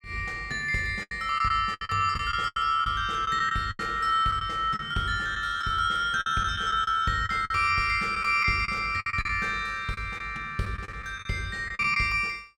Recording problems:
lost packets; 10% of the sound replaced, filled with the last packet

